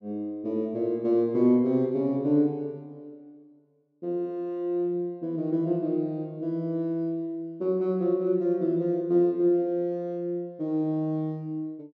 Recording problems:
none

